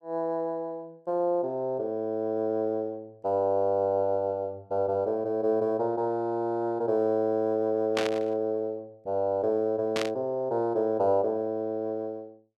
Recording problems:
static burst; at 8 s and at 10 s; peak +2 dB vs average level

